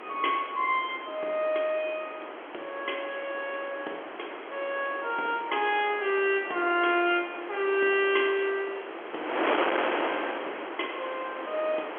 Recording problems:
telephone audio; 280 Hz to 3.4 kHz, G.711
wind noise; below 1.8 kHz, SNR 6 dB

